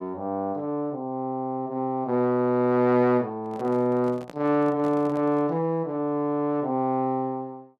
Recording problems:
microphone handling noise; from 3.5 to 5.5 s; peak -11 dB vs average level

